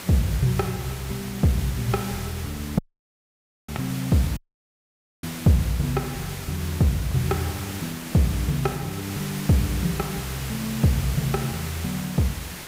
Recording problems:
hiss; slope -2 dB per octave, SNR 10 dB
audio cutting out; at 3 s for 1 s and at 4.5 s for 1 s

